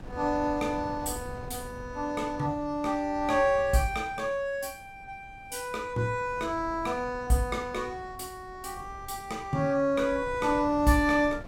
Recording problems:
wind on the microphone; below 260 Hz, SNR 17 dB

